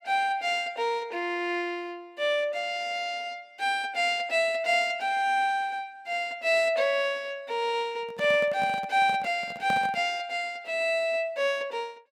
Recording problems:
microphone handling noise; from 8 to 10 s; peak -3 dB vs average level

